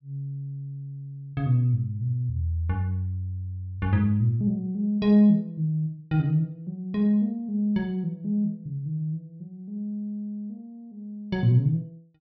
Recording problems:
low-pass filter; nothing above 6 kHz

